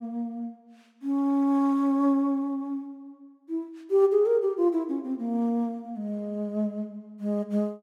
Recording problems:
none

